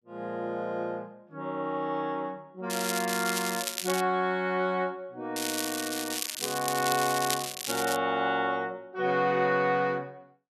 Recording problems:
crackling; from 2.5 to 4 s and from 5.5 to 8 s; loose cable, SNR 3 dB

